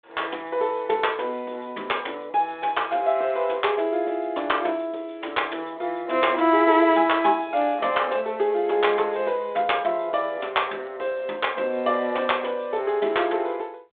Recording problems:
telephone audio; 280 Hz to 3.6 kHz, G.726

